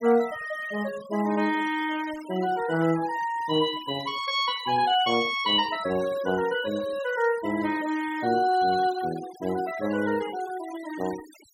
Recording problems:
denoising artefacts; signal-to-artefact ratio 18 dB

